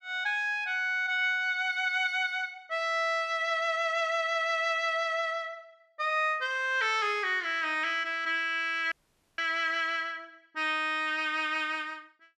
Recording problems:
dropout; at 9 s

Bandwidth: 13 kHz